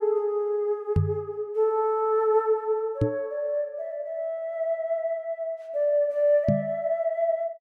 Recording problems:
microphone thump; at 1 s, at 3 s and at 6.5 s; peak +7 dB vs average level

